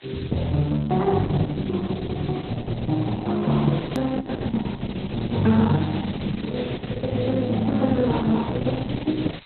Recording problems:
lossy codec; Opus, log-spectral distance 14 dB, nothing above 13.1 kHz
hiss; SNR 17 dB
edit click; at 4 s

